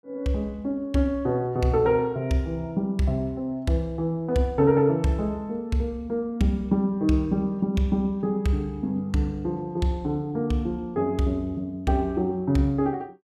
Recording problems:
none

